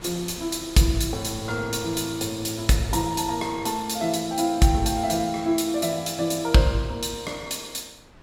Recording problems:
wind noise; below 1.1 kHz, SNR 23 dB

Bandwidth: 16 kHz